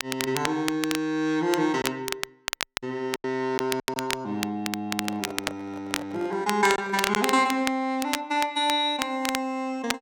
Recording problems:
crackling; vinyl, SNR 6 dB
packet loss; 3% of the sound replaced, filled with silence
microphone handling noise; from 5 to 7 s; peak -9 dB vs average level

